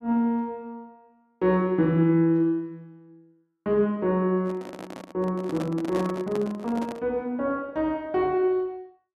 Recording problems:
microphone handling noise; from 4.5 to 7 s; peak -4 dB vs average level

